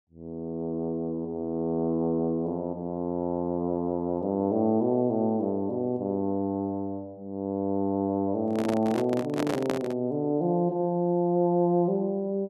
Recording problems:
microphone handling noise; from 8.5 to 10 s; peak +2 dB vs average level

